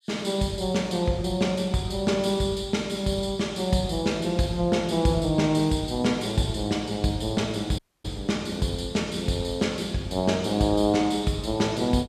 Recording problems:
dropout; at 8 s

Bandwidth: 14.5 kHz